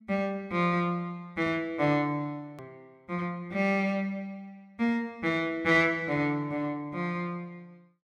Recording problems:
edit click; at 2.5 s

